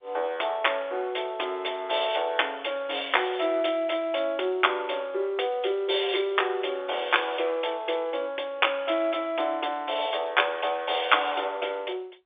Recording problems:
telephone audio; 300 Hz to 3.6 kHz, G.711

